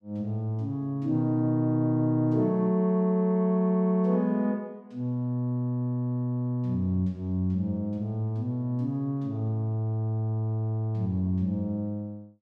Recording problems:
none

